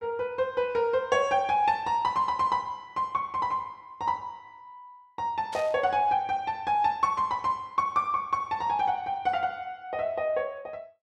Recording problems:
burst of static; at 5.5 s; peak -10 dB vs average level

